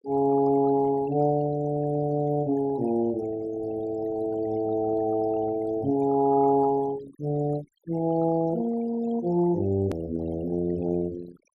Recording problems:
noise reduction artefacts; signal-to-artefact ratio 19 dB
hard cut with a click; at 10 s

